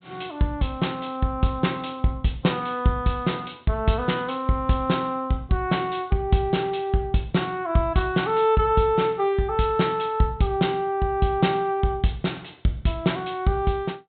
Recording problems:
low-pass filter; nothing above 4 kHz

